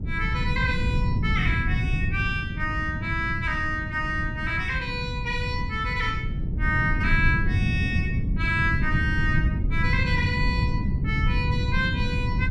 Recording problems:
wind noise; below 150 Hz, SNR 0 dB

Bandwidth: 14 kHz